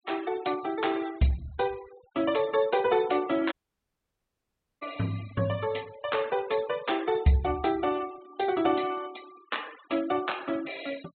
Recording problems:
treble cut off; nothing above 4 kHz
noise reduction artefacts; signal-to-artefact ratio 21 dB
dropout; at 3.5 s for 1.5 s

